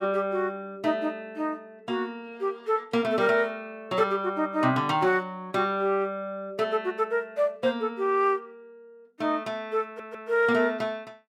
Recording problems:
stutter; at 10 s

